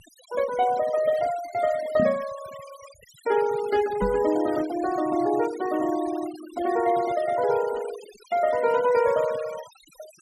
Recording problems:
noise reduction artefacts; signal-to-artefact ratio 17 dB
microphone bump; at 2 s and at 4 s; peak +1 dB vs average level

